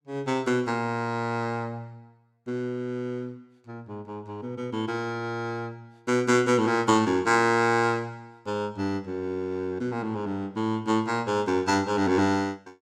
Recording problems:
none

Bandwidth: 16.5 kHz